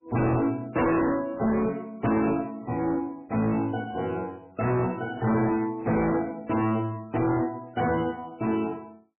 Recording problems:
lossy codec; MP3, log-spectral distance 3 dB, nothing above 2.5 kHz
distorted audio; hard clipping, signal-to-distortion ratio 7 dB

